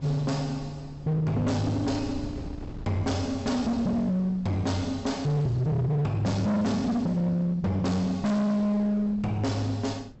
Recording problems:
treble cut off; nothing above 7.9 kHz
distortion; hard clipping, uneven, signal-to-distortion ratio 6 dB
wind noise; below 250 Hz, SNR 18 dB

